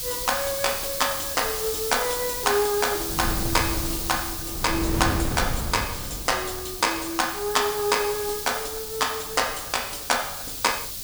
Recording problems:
background hiss; SNR 4 dB
wind noise; below 250 Hz, SNR 8 dB

